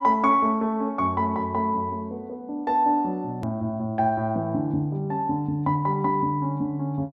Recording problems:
hard cut with a click; at 3.5 s

